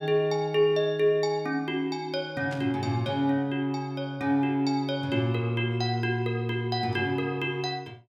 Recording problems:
static burst; at 2.5 s; peak -11 dB vs average level

